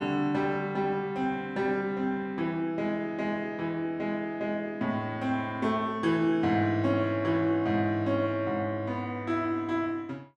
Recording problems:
none

